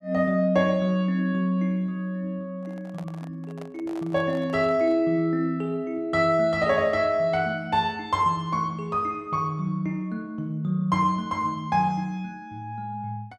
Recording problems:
handling noise; from 2.5 to 5 s; peak -12 dB vs average level

